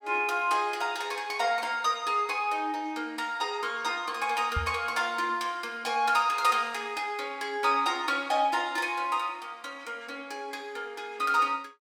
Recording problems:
microphone thump; at 4.5 s; peak 0 dB vs average level

